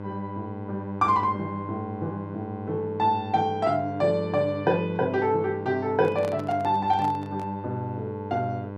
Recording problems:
electrical hum; 50 Hz, harmonics up to 1.6 kHz, SNR 10 dB
microphone handling noise; from 6 to 7.5 s; peak -7 dB vs average level

